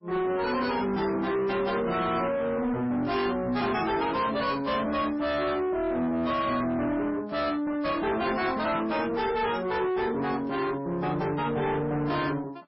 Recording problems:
lossy codec; MP3, log-spectral distance 3 dB, nothing above 5.3 kHz
distortion; soft clipping, signal-to-distortion ratio 7 dB

